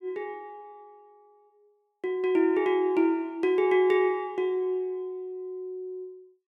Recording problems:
none

